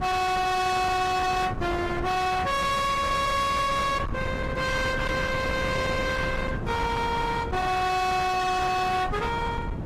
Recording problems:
lossy codec; AAC, log-spectral distance 3 dB, nothing above 14.1 kHz
distorted audio; hard clipping, signal-to-distortion ratio 6 dB
wind on the microphone; below 1 kHz, SNR 7 dB

